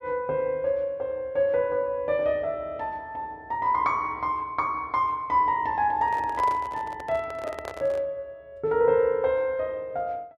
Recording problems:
microphone handling noise; from 6 to 8 s; peak -6 dB vs average level

